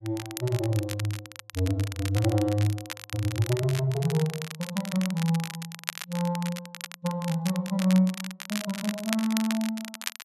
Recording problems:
crackling; vinyl, SNR 10 dB

